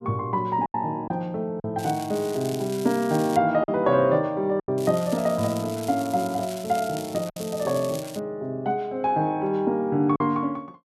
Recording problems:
lost packets; 3% of the sound replaced, filled with silence
crackling; from 2 to 3.5 s and from 5 to 8 s; loose cable, SNR 15 dB

